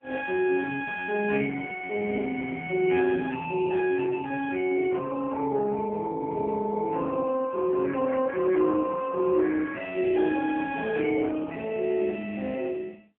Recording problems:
telephone audio; 220 Hz to 2.5 kHz, AMR-NB

